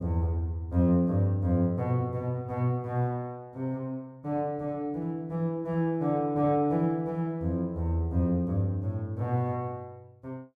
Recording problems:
none

